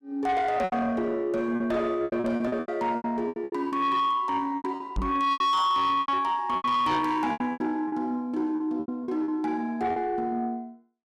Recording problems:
distorted audio; soft clipping, signal-to-distortion ratio 10 dB
packet loss; 14% of the sound replaced, filled with repeated pitch periods
knock on the microphone; at 5 s; peak 0 dB vs average level

